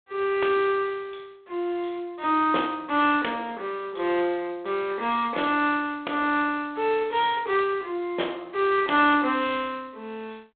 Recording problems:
phone line; 260 Hz to 3.7 kHz, G.726

